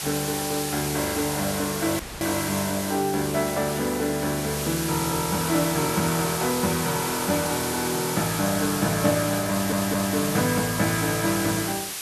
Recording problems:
hiss; slope +1 dB per octave, SNR 4 dB
dropout; at 2 s
audio stuttering; at 9.5 s

